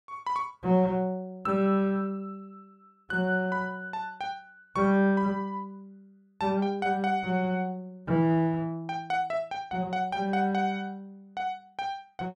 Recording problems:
none

